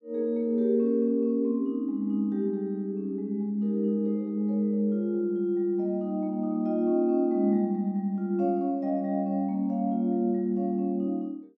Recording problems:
none

